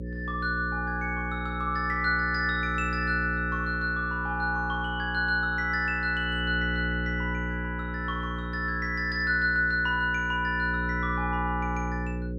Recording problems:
hum; 60 Hz, harmonics up to 540 Hz, SNR 6 dB

